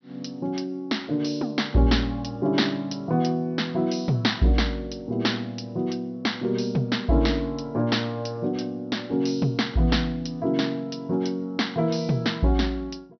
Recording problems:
treble cut off; nothing above 6 kHz

